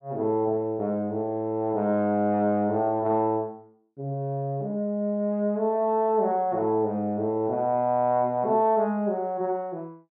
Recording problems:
none

